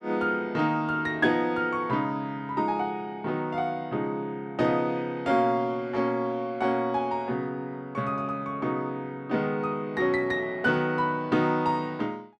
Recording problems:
none

